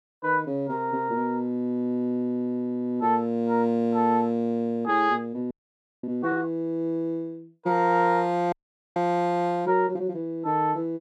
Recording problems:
audio freezing; at 5.5 s for 0.5 s and at 8.5 s

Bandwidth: 13 kHz